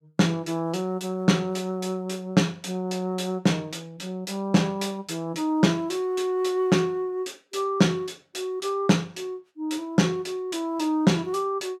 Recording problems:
none

